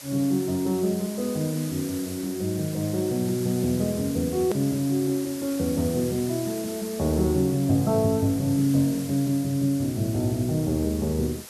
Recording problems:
hiss; slope 0 dB per octave, SNR 13 dB
edit click; at 4.5 s

